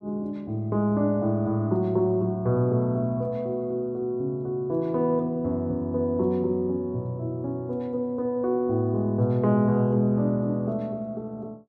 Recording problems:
none

